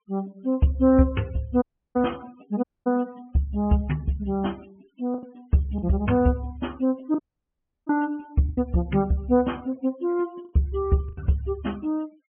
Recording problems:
treble cut off; nothing above 3.1 kHz
noise reduction artefacts; signal-to-artefact ratio 27 dB
packet loss; 4% of the sound replaced, filled with the last packet
audio cutting out; at 1.5 s, at 2.5 s and at 7 s for 0.5 s

